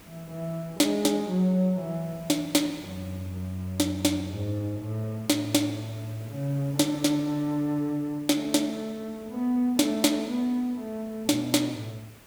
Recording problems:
background hiss; slope -4 dB per octave, SNR 23 dB

